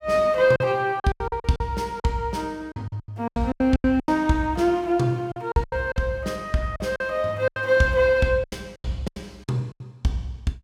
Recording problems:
lost packets; 14% of the sound replaced, filled with silence

